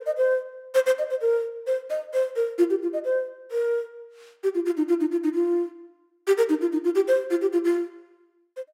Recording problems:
none

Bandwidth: 16.5 kHz